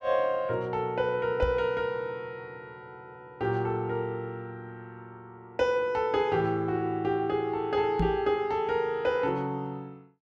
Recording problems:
microphone bump; at 1.5 s and at 8 s; peak +3 dB vs average level

